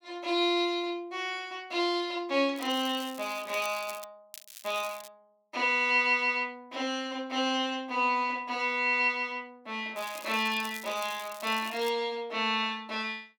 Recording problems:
crackling; from 2.5 to 4 s, at 4.5 s and from 10 to 12 s; loose cable, SNR 16 dB

